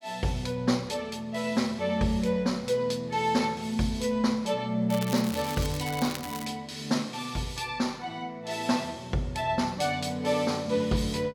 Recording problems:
crackling; from 5 to 6.5 s; loose cable, SNR 11 dB

